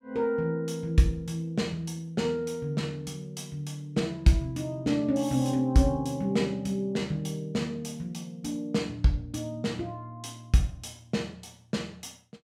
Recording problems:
none

